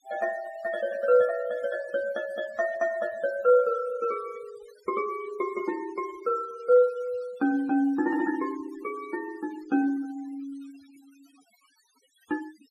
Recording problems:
denoising artefacts; signal-to-artefact ratio 22 dB

